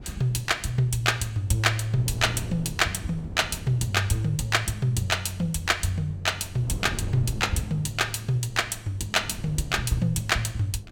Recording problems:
wind on the microphone; below 220 Hz, SNR 15 dB

